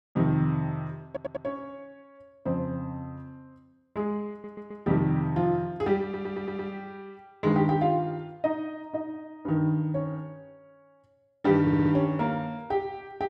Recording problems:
stutter; 4 times, first at 1 s

